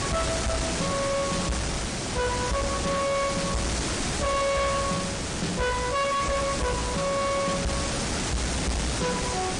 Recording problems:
codec artefacts; MP3, log-spectral distance 11 dB
distortion; soft clipping, signal-to-distortion ratio 6 dB
hiss; slope -3 dB per octave, SNR 1 dB

